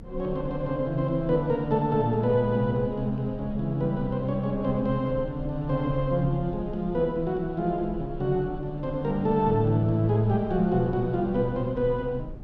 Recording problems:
rumble; below 100 Hz, strongest tone 24 Hz, SNR 16 dB

